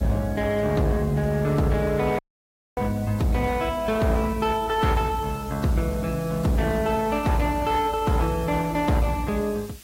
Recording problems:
lossy compression; AAC, log-spectral distance 3 dB, nothing above 16.1 kHz
distorted audio; hard clipping, uneven, signal-to-distortion ratio 11 dB
background hiss; SNR 21 dB
audio cutting out; at 2 s for 0.5 s

